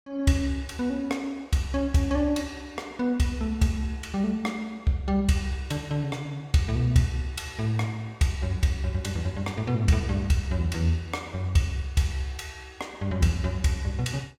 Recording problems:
none

